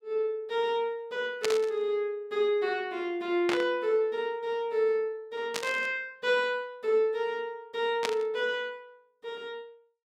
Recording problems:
static burst; 4 times, first at 1.5 s; peak +3 dB vs average level

